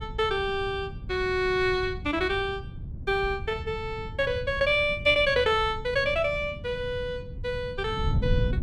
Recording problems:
wind on the microphone; below 130 Hz, SNR 10 dB

